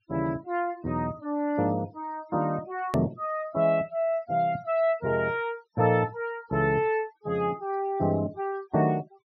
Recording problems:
treble cut off; nothing above 6 kHz
denoising artefacts; signal-to-artefact ratio 27 dB
hard cut with a click; at 3 s

